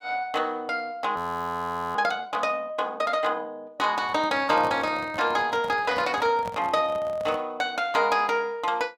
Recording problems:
frozen audio; at 1 s for 1 s
handling noise; from 4 to 7.5 s; peak -7 dB vs average level

